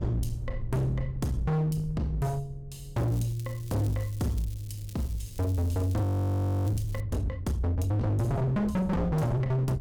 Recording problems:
distorted audio; hard clipping, uneven, signal-to-distortion ratio 6 dB
electrical hum; 60 Hz, harmonics up to 540 Hz, SNR 31 dB
wind on the microphone; below 120 Hz, SNR 13 dB
crackle; from 3 to 7 s; loose cable, SNR 22 dB
frozen audio; at 6 s for 0.5 s

